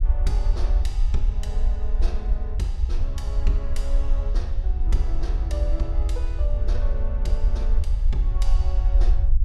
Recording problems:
rumble; below 50 Hz, SNR -11 dB

